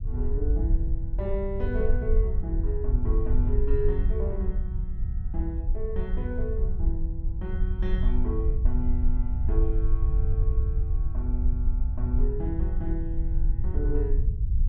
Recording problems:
low-frequency rumble; below 62 Hz, SNR -7 dB

